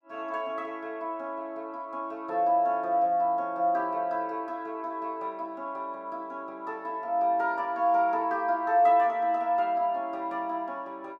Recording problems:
none

